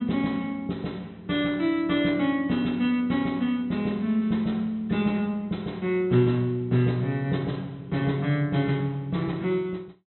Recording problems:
treble cut off; nothing above 4 kHz

